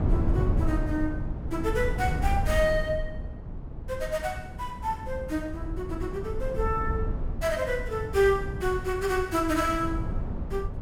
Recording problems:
low-frequency rumble; below 120 Hz, SNR 4 dB

